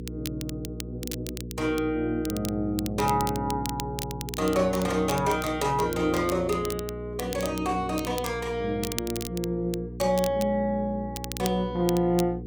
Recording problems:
electrical hum; 60 Hz, harmonics up to 480 Hz, SNR 10 dB
crackle; vinyl, SNR 12 dB

